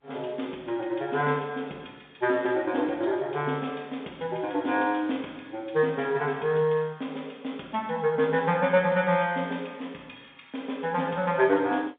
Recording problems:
telephone audio; 190 Hz to 3.6 kHz, G.711

